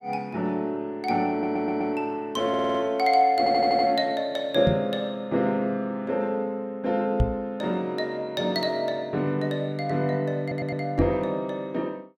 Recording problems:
audio stuttering; 4 times, first at 1.5 s
microphone thump; at 4.5 s, at 7 s and at 11 s; peak +6 dB vs average level

